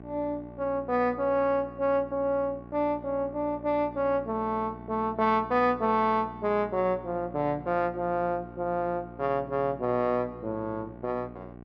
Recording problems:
hum; 60 Hz, harmonics up to 1.6 kHz, SNR 17 dB

